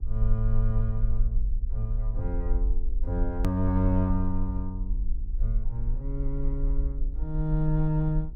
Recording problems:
electrical hum; 60 Hz, harmonics up to 840 Hz, SNR 25 dB
low-frequency rumble; below 46 Hz, SNR 1 dB
hard cut with a click; at 3.5 s

